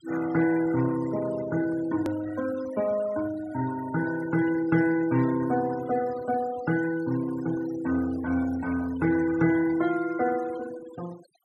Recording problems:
denoising artefacts; signal-to-artefact ratio 15 dB
edit click; at 2 s

